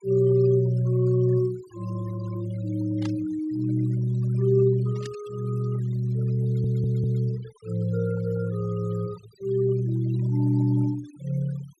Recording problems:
denoising artefacts; signal-to-artefact ratio 22 dB
burst of static; at 3 s and at 5 s; peak -12 dB vs average level
audio stuttering; at 6.5 s

